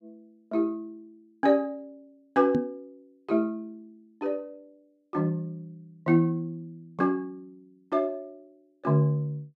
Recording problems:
knock on the microphone; at 2.5 s; peak +4 dB vs average level

